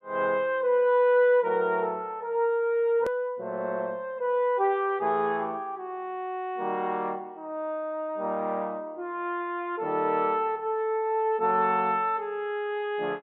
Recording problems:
treble missing; nothing above 4 kHz
edit click; at 3 s

